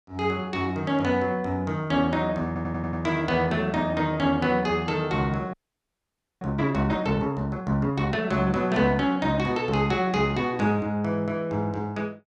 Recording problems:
stutter; at 2.5 s
audio freezing; at 5.5 s for 1 s

